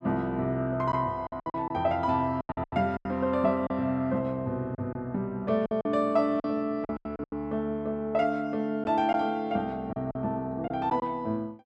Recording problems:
lost packets; 9% of the sound replaced, filled with silence

